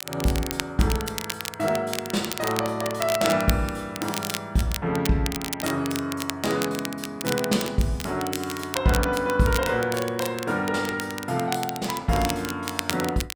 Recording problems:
crackle; vinyl, SNR 7 dB

